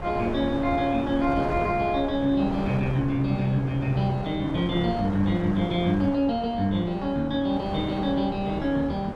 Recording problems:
wind noise; below 700 Hz, SNR 9 dB

